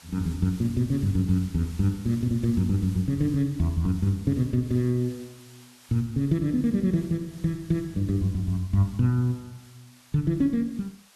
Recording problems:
hiss; slope +1 dB per octave, SNR 24 dB

